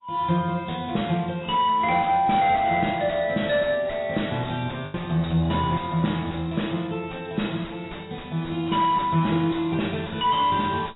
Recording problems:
lossy codec; AAC, log-spectral distance 7 dB, nothing above 3.8 kHz
distortion; soft clipping, signal-to-distortion ratio 9 dB
lost packets; 0.7% of the sound replaced, filled with the last packet

